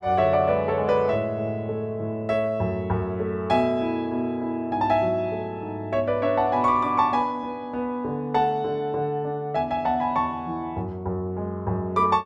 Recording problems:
none

